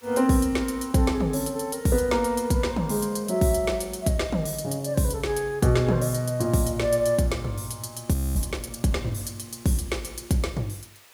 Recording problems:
background hiss; SNR 28 dB
audio freezing; at 8 s

